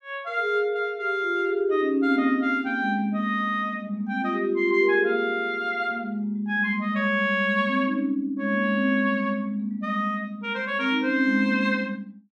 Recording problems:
none

